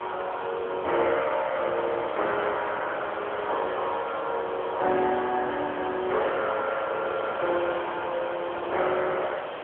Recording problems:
phone line; 320 Hz to 3.4 kHz, AMR-NB
hiss; SNR 8 dB
crackle; from 3 to 4.5 s; loose cable, SNR 23 dB

